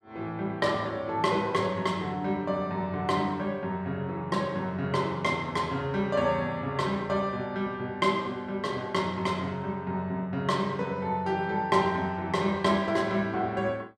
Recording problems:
none

